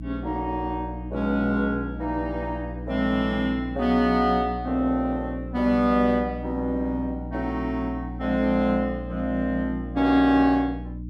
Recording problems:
hum; 60 Hz, harmonics up to 300 Hz, SNR 10 dB

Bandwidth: 13 kHz